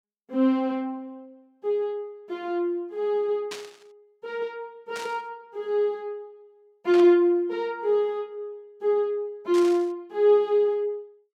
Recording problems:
static burst; 4 times, first at 3.5 s; peak -7 dB vs average level

